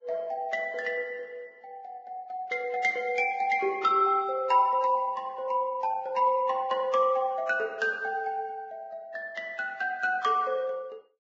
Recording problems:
lossy codec; Vorbis, log-spectral distance 2 dB

